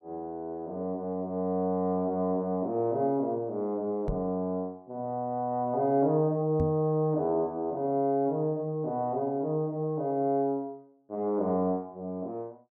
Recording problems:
microphone thump; at 4 s and at 6.5 s; peak +1 dB vs average level

